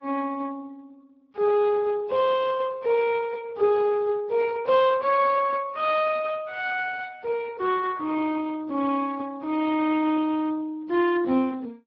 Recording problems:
codec artefacts; Vorbis, then Speex, log-spectral distance 3 dB

